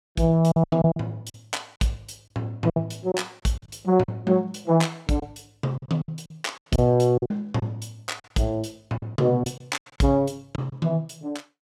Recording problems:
packet loss; 10% of the sound replaced, filled with silence

